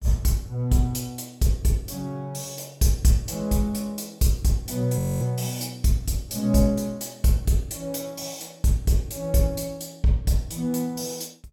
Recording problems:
audio freezing; at 5 s

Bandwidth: 17 kHz